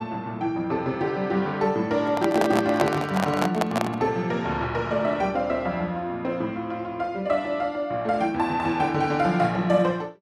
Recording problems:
handling noise; from 2 to 4 s; peak +4 dB vs average level

